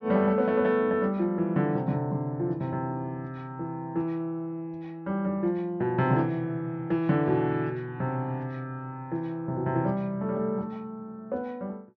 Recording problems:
treble missing; nothing above 6.3 kHz

